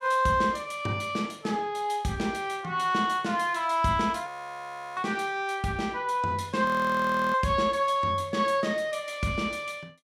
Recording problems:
frozen audio; at 4.5 s for 0.5 s and at 6.5 s for 0.5 s

